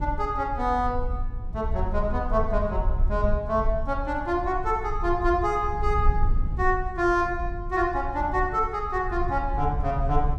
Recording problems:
low-frequency rumble; below 64 Hz, SNR 5 dB

